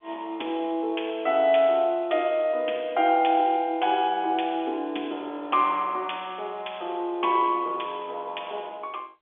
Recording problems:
telephone audio; 280 Hz to 3.5 kHz, G.711

